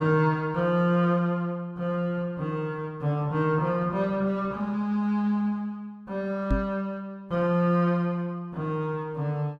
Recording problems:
microphone thump; at 6.5 s; peak +4 dB vs average level

